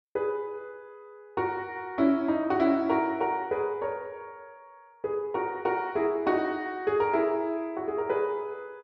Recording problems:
none

